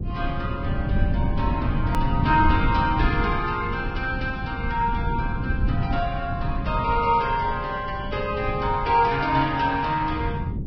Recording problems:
codec artefacts; Vorbis, log-spectral distance 2 dB
rumble; below 150 Hz, SNR 3 dB
hard cut with a click; at 2 s

